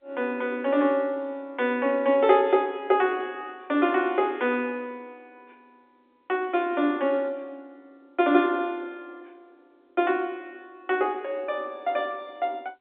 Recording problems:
phone line; 190 Hz to 3.6 kHz, G.711

